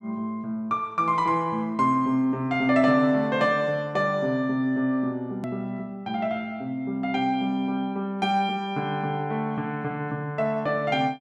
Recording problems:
edit click; at 5.5 s

